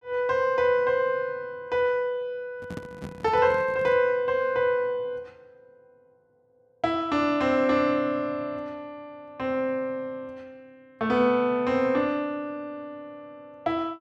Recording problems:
handling noise; from 2.5 to 4 s; peak -7 dB vs average level

